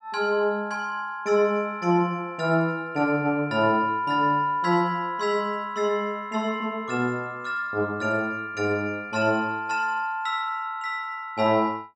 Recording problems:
none

